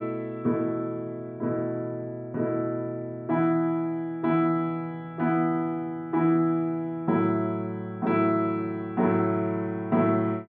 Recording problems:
none

